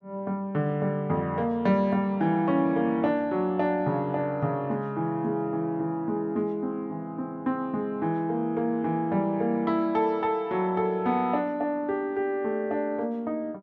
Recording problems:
none

